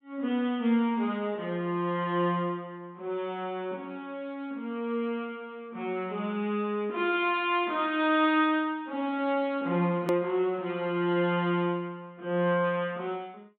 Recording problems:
treble missing; nothing above 4 kHz
click at an edit; at 10 s

